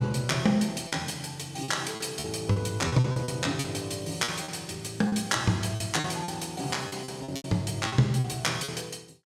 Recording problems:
packet loss; 11% of the sound replaced, filled with repeated pitch periods

